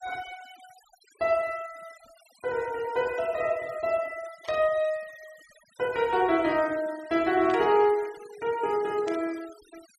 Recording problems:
denoising artefacts; signal-to-artefact ratio 22 dB
static burst; at 4.5 s, at 7.5 s and at 9 s; peak -11 dB vs average level

